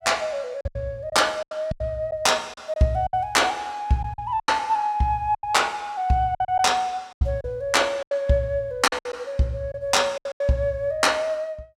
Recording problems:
lost packets; 10% of the sound replaced, filled with silence

